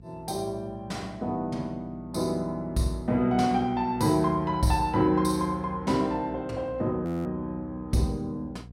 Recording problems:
hum; 60 Hz, harmonics up to 480 Hz, SNR 19 dB
audio freezing; at 7 s

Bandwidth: 16 kHz